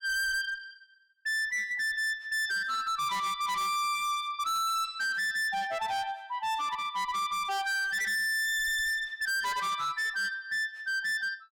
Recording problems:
distortion; hard clipping, uneven, signal-to-distortion ratio 6 dB

